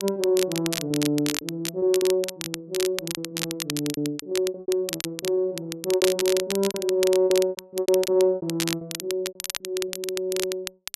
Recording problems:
crackle; vinyl, SNR 6 dB
lost packets; 16% of the sound replaced, filled with repeated pitch periods

